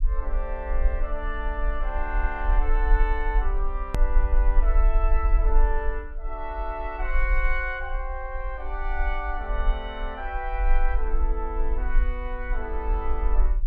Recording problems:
rumble; below 42 Hz, strongest tone 22 Hz, SNR -4 dB
hard cut with a click; at 4 s

